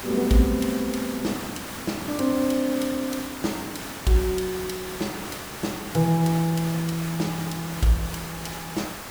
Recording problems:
hiss; slope -3 dB per octave, SNR 9 dB

